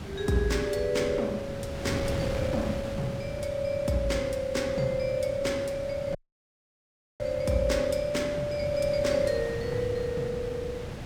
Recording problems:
wind noise; below 560 Hz, SNR 8 dB
dropout; at 6 s for 1 s

